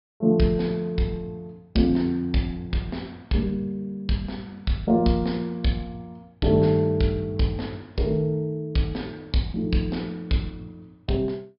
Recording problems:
treble missing; nothing above 5.5 kHz

